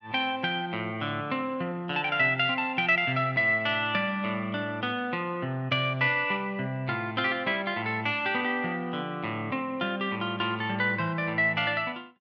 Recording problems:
none

